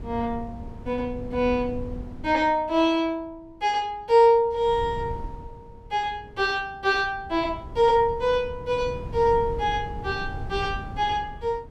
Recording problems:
wind on the microphone; below 150 Hz, SNR 14 dB

